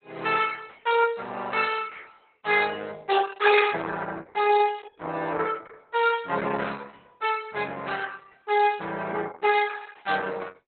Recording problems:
lossy codec; Opus, log-spectral distance 6 dB, nothing above 4 kHz

